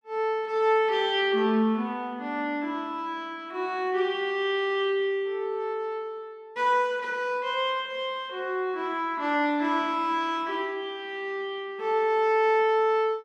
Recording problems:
none

